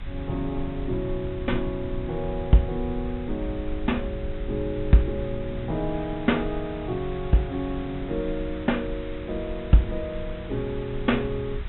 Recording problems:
treble cut off; nothing above 3.8 kHz
electrical hum; 60 Hz, harmonics up to 720 Hz, SNR 24 dB
hiss; SNR 18 dB
rumble; below 72 Hz, SNR 10 dB
wind noise; below 270 Hz, SNR 21 dB

